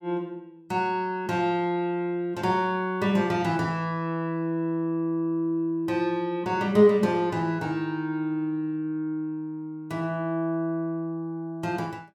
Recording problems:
none

